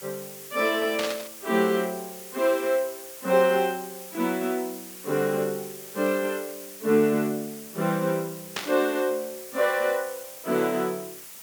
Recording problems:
hiss; slope +1 dB per octave, SNR 14 dB
burst of static; at 1 s and at 8.5 s; peak 0 dB vs average level

